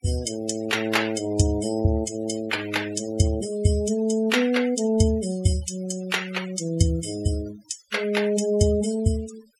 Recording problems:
denoising artefacts; signal-to-artefact ratio 15 dB

